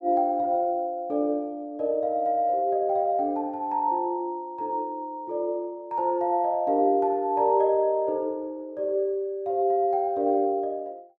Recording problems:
none

